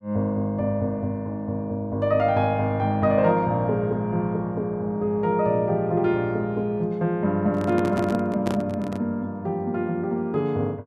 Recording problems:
handling noise; from 7.5 to 9 s; peak 0 dB vs average level

